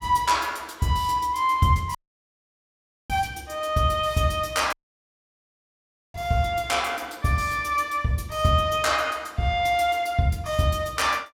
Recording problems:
dropout; at 2 s for 1 s and at 4.5 s for 1.5 s

